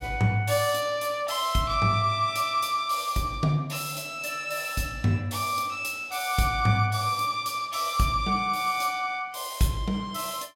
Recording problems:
none

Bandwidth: 16 kHz